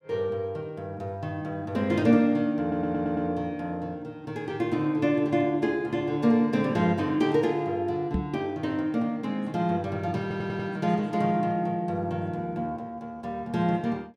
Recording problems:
audio stuttering; at 2.5 s and at 10 s
microphone thump; at 8 s; peak +3 dB vs average level

